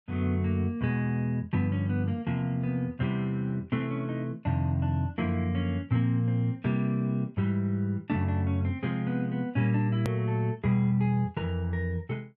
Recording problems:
hard cut with a click; at 10 s

